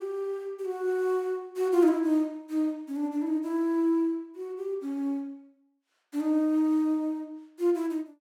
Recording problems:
none

